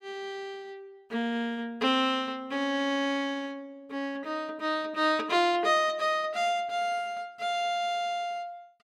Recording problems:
none

